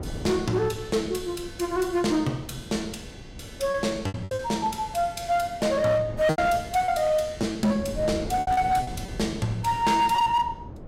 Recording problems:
distorted audio; hard clipping, signal-to-distortion ratio 12 dB
wind noise; below 300 Hz, SNR 14 dB
packet loss; 6% of the sound replaced, filled with repeated pitch periods

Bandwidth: 16 kHz